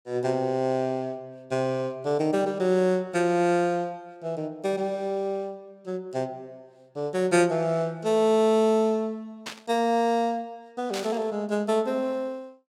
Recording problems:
burst of static; at 9.5 s and at 11 s; peak -5 dB vs average level

